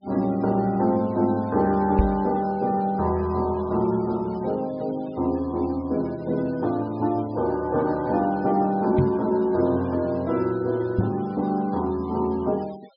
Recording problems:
treble cut off; nothing above 5.5 kHz
denoising artefacts; signal-to-artefact ratio 25 dB
microphone thump; at 2 s, at 9 s and at 11 s; peak +7 dB vs average level

